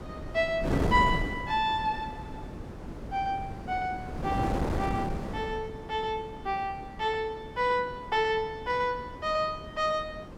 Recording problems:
wind noise; below 460 Hz, SNR 6 dB

